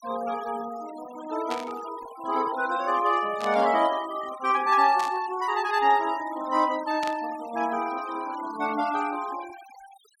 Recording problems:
denoising artefacts; signal-to-artefact ratio 18 dB
static burst; 4 times, first at 1.5 s; peak -6 dB vs average level

